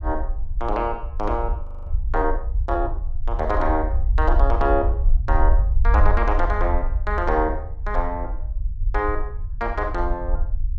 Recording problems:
low-frequency rumble; below 58 Hz, SNR 0 dB
audio freezing; at 1.5 s

